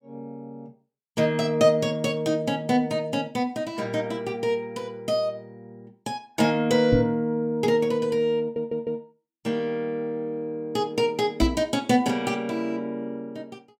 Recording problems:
microphone bump; at 7 s and at 11 s; peak +6 dB vs average level
stutter; at 8.5 s

